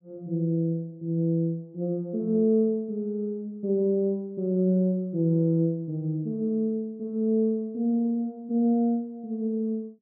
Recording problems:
treble missing; nothing above 3.6 kHz

